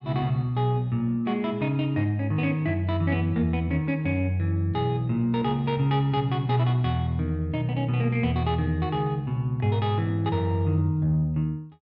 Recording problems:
none

